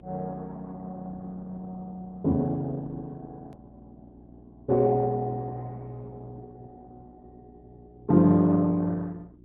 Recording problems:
low-pass filter; nothing above 4 kHz
lossy codec; Opus, log-spectral distance 2 dB
hum; 60 Hz, harmonics up to 360 Hz, SNR 25 dB
hard cut with a click; at 3.5 s

